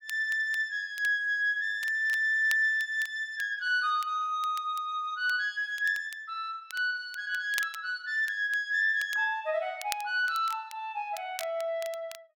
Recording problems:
crackling; vinyl, SNR 18 dB

